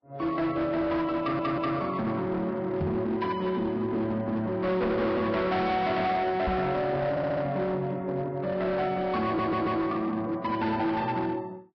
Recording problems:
lossy codec; Vorbis, log-spectral distance 2 dB, nothing above 5.2 kHz
distorted audio; hard clipping, signal-to-distortion ratio 10 dB
audio stuttering; at 1 s, at 7 s and at 9.5 s
knock on the microphone; at 3 s and at 6.5 s; peak +1 dB vs average level

